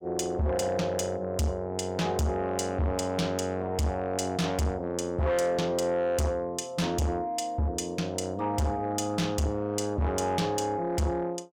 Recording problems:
distortion; soft clipping, signal-to-distortion ratio 7 dB

